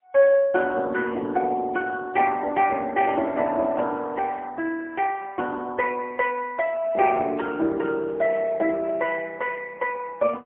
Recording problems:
telephone audio; 280 Hz to 2.9 kHz, AMR-NB, then MP3

